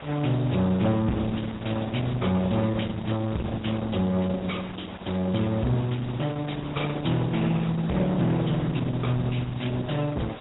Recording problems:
treble cut off; nothing above 3.8 kHz
lossy codec; Opus, log-spectral distance 10 dB
distortion; soft clipping, signal-to-distortion ratio 6 dB
background hiss; SNR 14 dB

